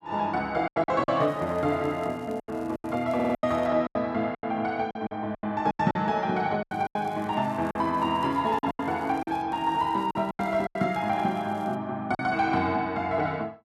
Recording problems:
lost packets; 11% of the sound replaced, filled with silence
crackling; from 1 to 3.5 s, from 6.5 to 9.5 s and from 9.5 to 12 s; loose cable, SNR 29 dB
audio stuttering; at 3 s

